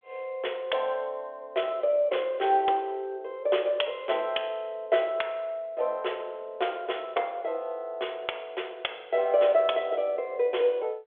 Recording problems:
telephone audio; 320 Hz to 3.5 kHz, G.726

